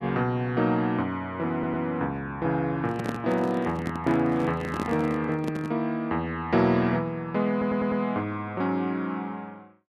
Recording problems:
audio stuttering; at 1.5 s and at 7.5 s
microphone handling noise; from 3 to 5.5 s; peak -1 dB vs average level

